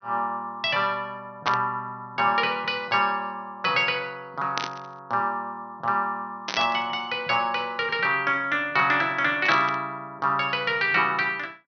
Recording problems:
treble missing; nothing above 6.1 kHz
static burst; 4 times, first at 1.5 s; peak +1 dB vs average level

